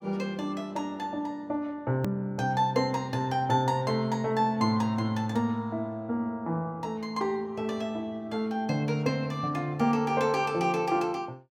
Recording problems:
click at an edit; at 2 s

